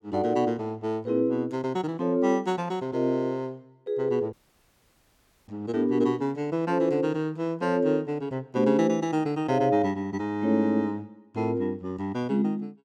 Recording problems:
audio cutting out; at 4.5 s for 1 s

